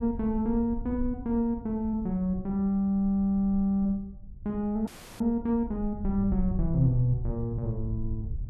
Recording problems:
low-frequency rumble; below 74 Hz, SNR 11 dB
frozen audio; at 5 s

